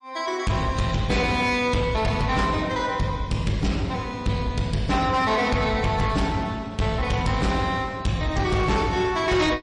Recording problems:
lossy compression; MP3, log-spectral distance 2 dB, nothing above 10.4 kHz
distorted audio; soft clipping, signal-to-distortion ratio 11 dB

